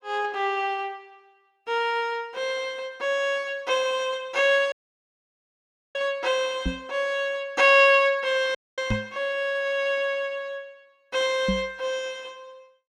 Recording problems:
dropout; at 4.5 s for 1 s and at 8.5 s
microphone thump; at 6.5 s, at 9 s and at 11 s; peak +1 dB vs average level

